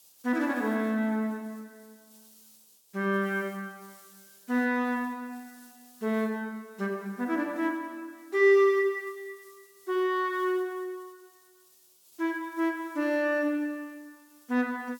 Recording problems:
hiss; SNR 27 dB

